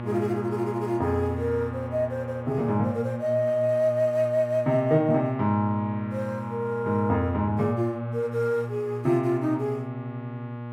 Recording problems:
hum; 60 Hz, harmonics up to 1.7 kHz, SNR 10 dB

